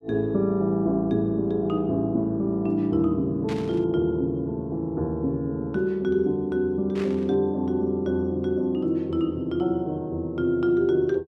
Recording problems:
static burst; at 3.5 s and at 7 s; peak -10 dB vs average level

